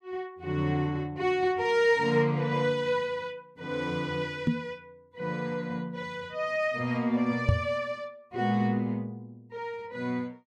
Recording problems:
microphone thump; at 4.5 s and at 7.5 s; peak +9 dB vs average level

